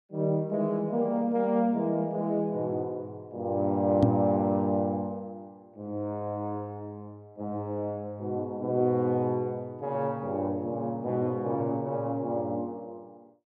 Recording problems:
knock on the microphone; at 4 s; peak +8 dB vs average level

